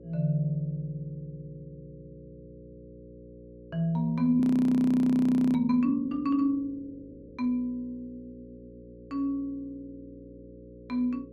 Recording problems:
hum; 60 Hz, harmonics up to 540 Hz, SNR 21 dB
frozen audio; at 4.5 s for 1 s

